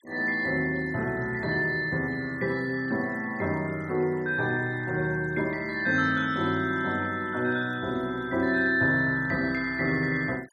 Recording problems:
noise reduction artefacts; signal-to-artefact ratio 26 dB

